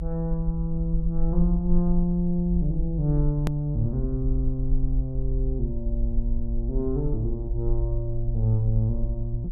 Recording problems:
rumble; below 48 Hz, SNR 3 dB
edit click; at 3.5 s

